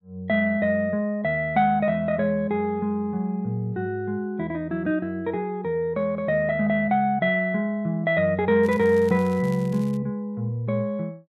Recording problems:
crackle; from 8.5 to 10 s; loose cable, SNR 25 dB

